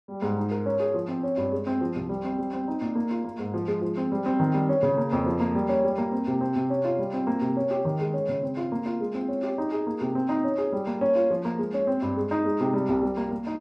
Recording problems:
none

